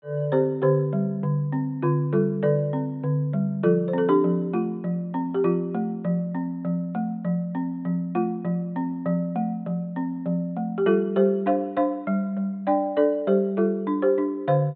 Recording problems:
low-pass filter; nothing above 4 kHz

